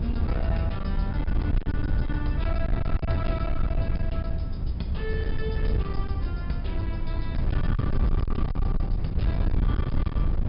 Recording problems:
treble missing; nothing above 5.5 kHz
distortion; hard clipping, uneven, signal-to-distortion ratio 12 dB
electrical hum; 50 Hz, harmonics up to 800 Hz, SNR 12 dB
low-frequency rumble; below 80 Hz, strongest tone 58 Hz, SNR 6 dB
wind noise; below 98 Hz, SNR -7 dB

